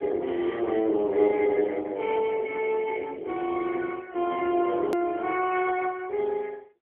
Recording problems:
telephone audio; 260 Hz to 3.1 kHz, AMR-NB
edit click; at 5 s

